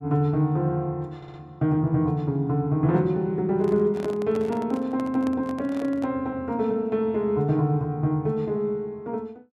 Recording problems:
audio stuttering; at 1 s
microphone handling noise; from 3.5 to 6 s; peak -7 dB vs average level

